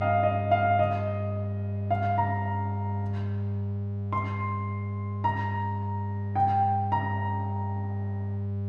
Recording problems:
hum; 50 Hz, harmonics up to 600 Hz, SNR 2 dB

